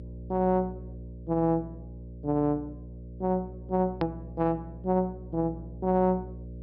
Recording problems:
treble missing; nothing above 5.5 kHz
hum; 60 Hz, harmonics up to 600 Hz, SNR 14 dB
click at an edit; at 4 s

